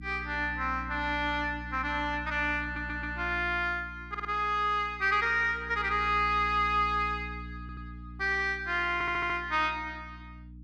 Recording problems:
hum; 60 Hz, harmonics up to 300 Hz, SNR 14 dB
audio stuttering; 4 times, first at 2.5 s

